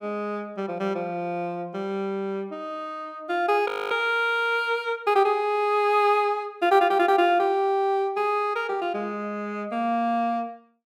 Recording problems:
audio freezing; at 3.5 s

